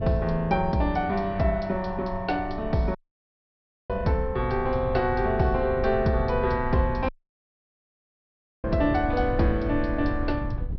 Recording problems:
low-pass filter; nothing above 5.5 kHz
wind noise; below 98 Hz, SNR 9 dB
audio cutting out; at 3 s for 1 s and at 7 s for 1.5 s

